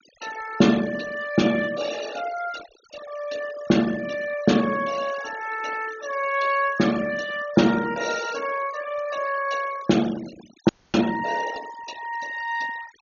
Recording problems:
treble missing; nothing above 6.7 kHz
denoising artefacts; signal-to-artefact ratio 15 dB
frozen audio; at 11 s

